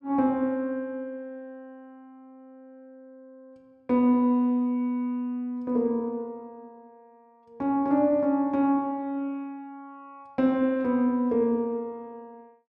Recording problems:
none

